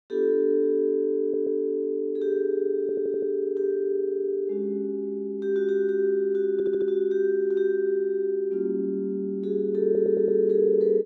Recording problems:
stutter; 4 times, first at 1 s

